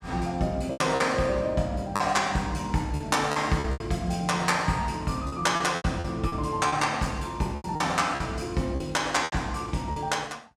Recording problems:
lost packets; 9% of the sound replaced, filled with repeated pitch periods

